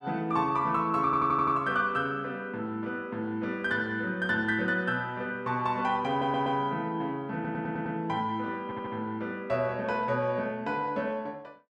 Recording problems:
stutter; 4 times, first at 1 s

